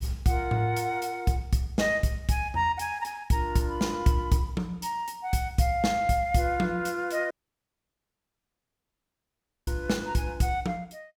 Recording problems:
dropout; at 7.5 s for 2.5 s

